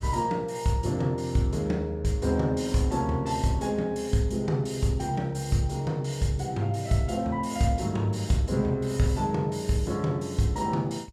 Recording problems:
none

